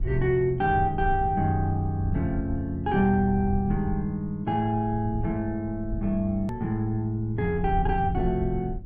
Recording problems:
rumble; below 86 Hz, SNR 10 dB
hard cut with a click; at 6.5 s

